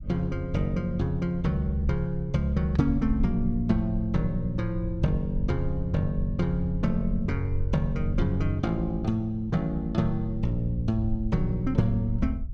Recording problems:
low-frequency rumble; below 64 Hz, SNR 8 dB

